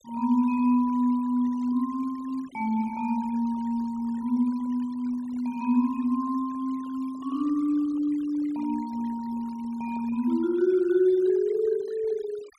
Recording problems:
noise reduction artefacts; signal-to-artefact ratio 25 dB

